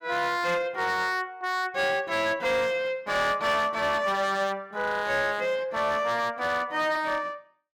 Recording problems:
distorted audio; hard clipping, signal-to-distortion ratio 11 dB

